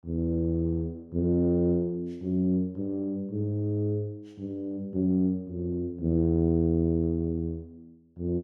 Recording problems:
none

